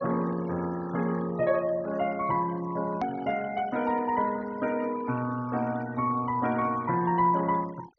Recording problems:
low-pass filter; nothing above 6.4 kHz
denoising artefacts; signal-to-artefact ratio 19 dB
edit click; at 3 s

